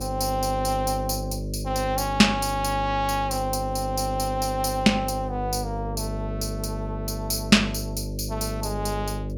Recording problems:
hum; 50 Hz, harmonics up to 600 Hz, SNR 6 dB

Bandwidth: 18.5 kHz